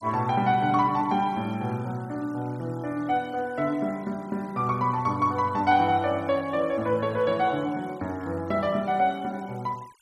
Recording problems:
denoising artefacts; signal-to-artefact ratio 26 dB

